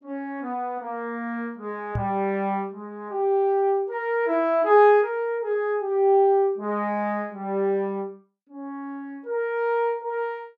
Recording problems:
microphone bump; at 2 s; peak -1 dB vs average level

